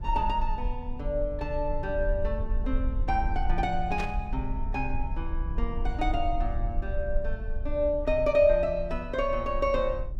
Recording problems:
rumble; below 50 Hz, strongest tone 20 Hz, SNR 5 dB
burst of static; at 4 s; peak -5 dB vs average level

